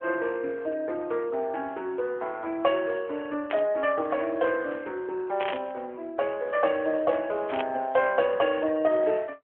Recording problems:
phone line; 280 Hz to 3.4 kHz, AMR-NB
burst of static; at 3.5 s, at 5.5 s and at 7.5 s; peak -1 dB vs average level

